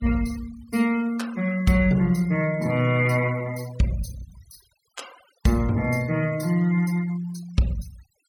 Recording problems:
noise reduction artefacts; signal-to-artefact ratio 22 dB

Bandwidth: 17 kHz